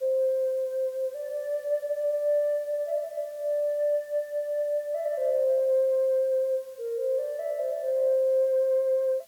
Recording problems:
hiss; slope 0 dB per octave, SNR 29 dB

